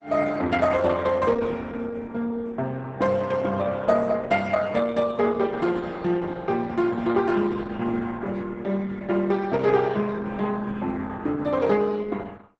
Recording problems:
lossy compression; Opus, log-spectral distance 3 dB, nothing above 8 kHz

